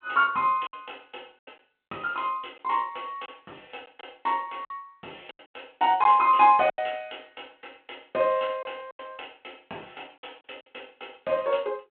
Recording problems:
telephone audio; 240 Hz to 3.4 kHz, G.726
packet loss; 6% of the sound replaced, filled with silence

